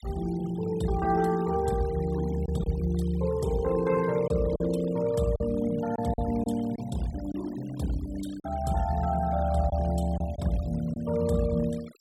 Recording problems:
noise reduction artefacts; signal-to-artefact ratio 20 dB
lost packets; 3% of the sound replaced, filled with silence

